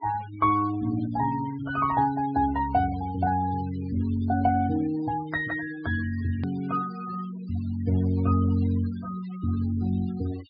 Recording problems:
low-pass filter; nothing above 5 kHz
noise reduction artefacts; signal-to-artefact ratio 20 dB
hard cut with a click; at 6.5 s

